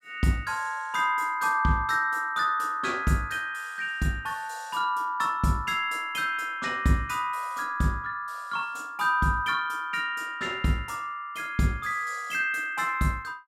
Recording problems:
none

